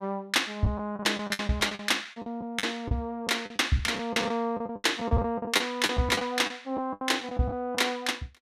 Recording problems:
lost packets; 15% of the sound replaced, filled with the last packet

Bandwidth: 15 kHz